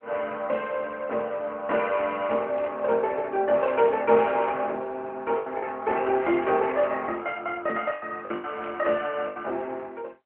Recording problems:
phone line; 260 Hz to 3.1 kHz, AMR-NB
lost packets; 4% of the sound replaced, filled with the last packet
static burst; 4 times, first at 2.5 s; peak -12 dB vs average level

